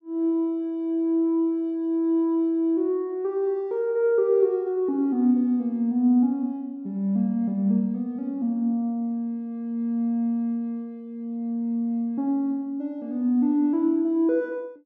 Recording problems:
none

